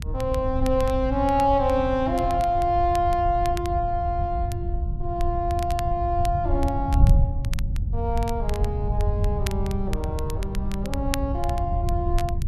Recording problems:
wind noise; below 94 Hz, SNR 2 dB
crackling; vinyl, SNR 17 dB

